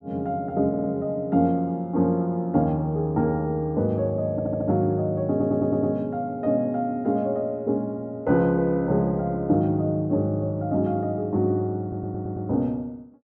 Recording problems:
stutter; 4 times, first at 0.5 s

